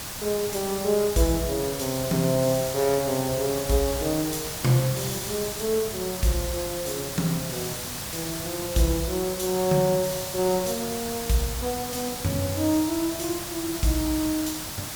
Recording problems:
hiss; slope -1 dB per octave, SNR 6 dB

